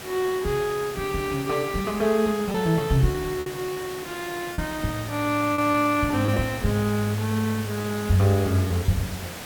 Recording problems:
background hiss; slope -3 dB per octave, SNR 12 dB
lost packets; 4% of the sound replaced, filled with repeated pitch periods

